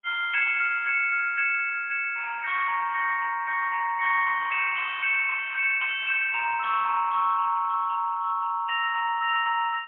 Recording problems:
phone line; 990 Hz to 2.1 kHz, AMR-NB, then MP3

